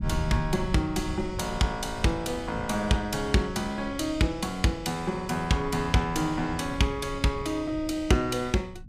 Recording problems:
rumble; below 140 Hz, SNR 12 dB

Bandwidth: 15.5 kHz